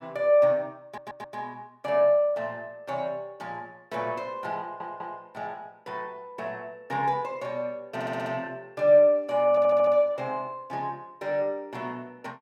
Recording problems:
stutter; 4 times, first at 1 s

